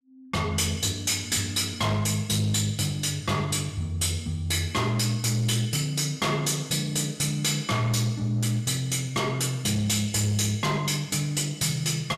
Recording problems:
distortion; hard clipping, signal-to-distortion ratio 11 dB

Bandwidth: 14.5 kHz